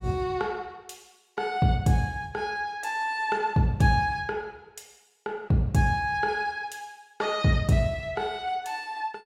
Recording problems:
none

